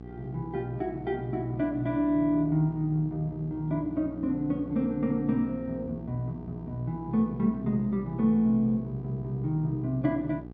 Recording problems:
electrical hum; 60 Hz, harmonics up to 900 Hz, SNR 14 dB

